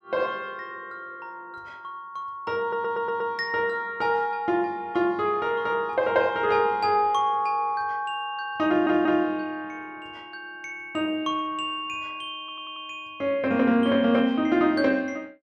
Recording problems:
audio stuttering; at 2.5 s, at 8.5 s and at 12 s

